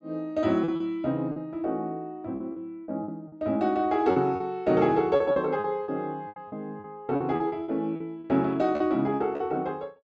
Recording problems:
treble cut off; nothing above 7.9 kHz
packet loss; 11% of the sound replaced, filled with repeated pitch periods

